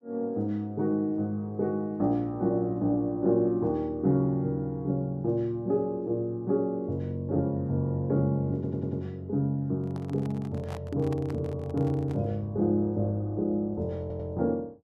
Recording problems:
audio stuttering; at 8.5 s and at 14 s
microphone handling noise; from 10 to 12 s; peak -9 dB vs average level

